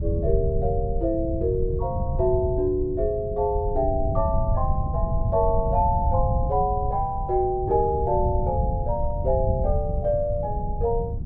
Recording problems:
wind noise; below 110 Hz, SNR 3 dB

